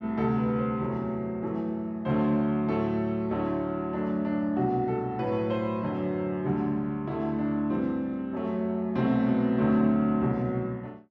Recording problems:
none

